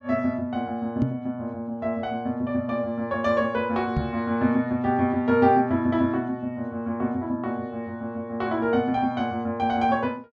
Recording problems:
knock on the microphone; at 1 s and at 4 s; peak +5 dB vs average level

